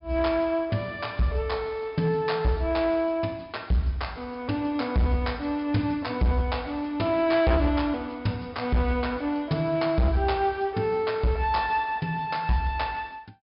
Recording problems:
treble missing; nothing above 5.5 kHz
distortion; hard clipping, signal-to-distortion ratio 10 dB

